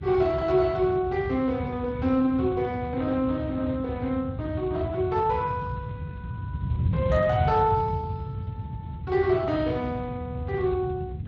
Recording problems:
codec artefacts; Speex, log-spectral distance 2 dB
wind on the microphone; below 160 Hz, SNR 6 dB

